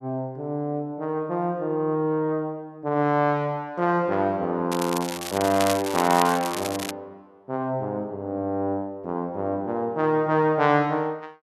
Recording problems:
crackle; from 4.5 to 7 s; loose cable, SNR 8 dB

